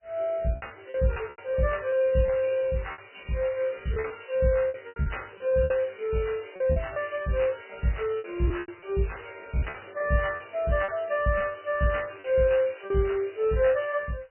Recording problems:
codec artefacts; MP3, log-spectral distance 6 dB, nothing above 2.5 kHz
lost packets; 9% of the sound replaced, filled with repeated pitch periods

